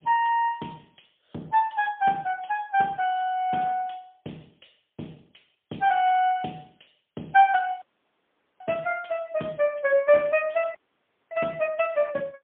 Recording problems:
telephone audio; 220 Hz to 3.5 kHz, AMR-NB, then MP3
audio cutting out; at 8 s for 1 s and at 11 s for 0.5 s

